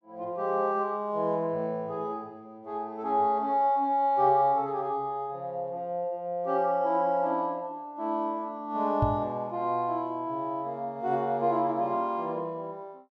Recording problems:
microphone bump; at 9 s; peak +5 dB vs average level

